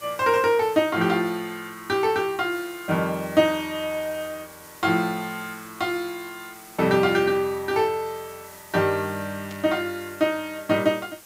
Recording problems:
hiss; slope -1 dB per octave, SNR 20 dB
burst of static; at 9.5 s; peak -14 dB vs average level

